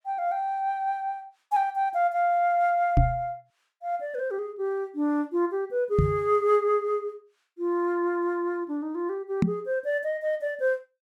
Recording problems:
microphone bump; at 3 s, at 6 s and at 9.5 s; peak +7 dB vs average level

